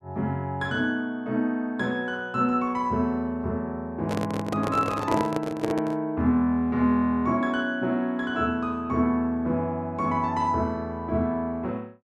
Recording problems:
handling noise; from 4 to 6 s; peak +2 dB vs average level

